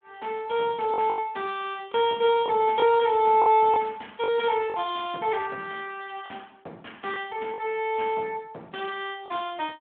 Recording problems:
phone line; 300 Hz to 3.4 kHz, Speex
lost packets; 5% of the sound replaced, filled with the last packet

